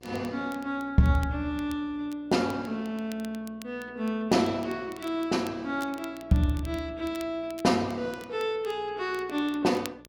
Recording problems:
hum; 60 Hz, harmonics up to 1.3 kHz, SNR 26 dB
crackling; vinyl, SNR 22 dB

